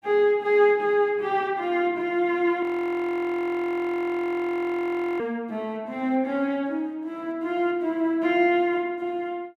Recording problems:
frozen audio; at 2.5 s for 2.5 s

